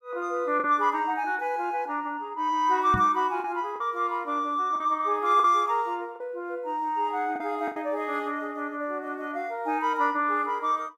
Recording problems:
lost packets; 3% of the sound replaced, filled with the last packet
microphone thump; at 3 s; peak 0 dB vs average level

